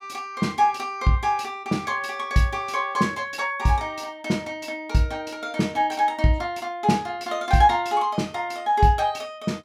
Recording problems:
none

